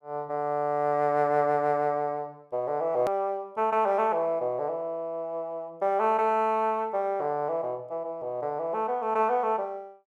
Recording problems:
hard cut with a click; at 3 s

